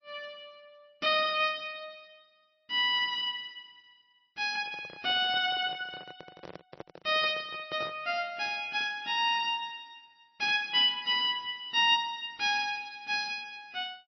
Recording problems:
lossy codec; MP3, log-spectral distance 3 dB, nothing above 5 kHz
microphone handling noise; from 4.5 to 8 s; peak -10 dB vs average level

